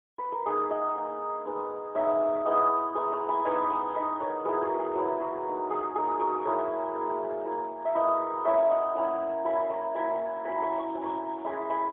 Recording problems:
phone line; 280 Hz to 3.3 kHz, AMR-NB, then MP3

